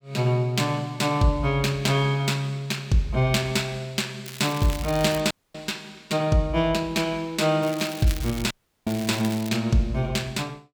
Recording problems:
crackling; at 4.5 s and from 7.5 to 9.5 s; loose cable, SNR 14 dB
audio cutting out; at 5.5 s and at 8.5 s

